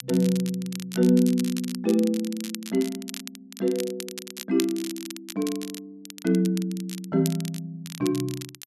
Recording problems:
crackle; vinyl, SNR 13 dB

